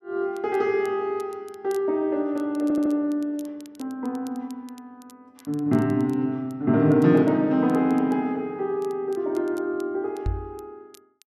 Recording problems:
crackle; vinyl, SNR 29 dB
stutter; at 2.5 s
microphone thump; at 10 s; peak 0 dB vs average level

